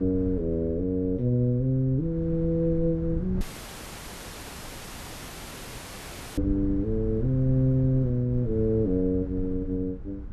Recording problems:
wind noise; below 100 Hz, SNR 11 dB
dropout; at 3.5 s for 3 s

